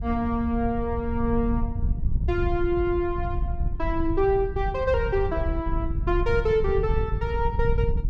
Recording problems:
wind noise; below 88 Hz, SNR 4 dB

